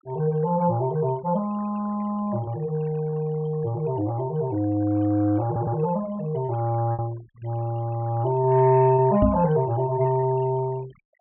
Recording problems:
low-pass filter; nothing above 3.1 kHz
noise reduction artefacts; signal-to-artefact ratio 25 dB
lost packets; 3% of the sound replaced, filled with repeated pitch periods
audio stuttering; at 5.5 s
microphone thump; at 9 s; peak +5 dB vs average level

